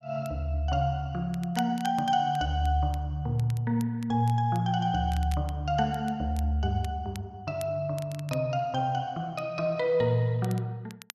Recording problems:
crackle; vinyl, SNR 22 dB

